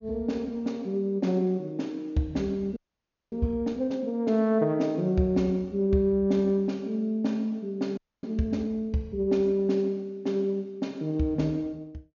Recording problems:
treble cut off; nothing above 6.9 kHz
audio freezing; at 3 s for 0.5 s and at 8 s

